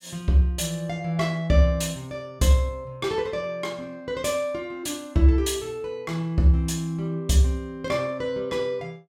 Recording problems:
none

